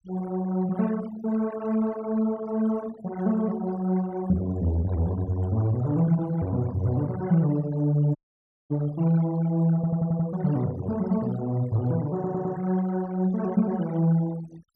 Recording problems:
denoising artefacts; signal-to-artefact ratio 19 dB
dropout; at 8 s for 0.5 s
audio stuttering; at 10 s and at 12 s

